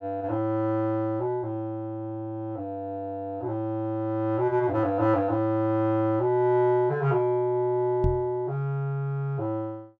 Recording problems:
microphone thump; at 8 s; peak +4 dB vs average level

